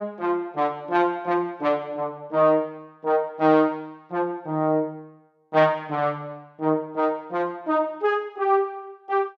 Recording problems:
none

